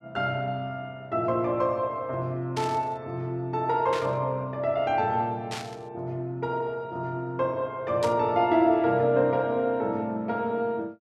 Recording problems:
static burst; 4 times, first at 2.5 s; peak -5 dB vs average level

